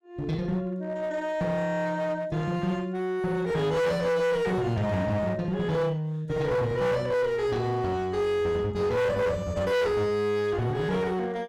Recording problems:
distorted audio; hard clipping, uneven, signal-to-distortion ratio 7 dB

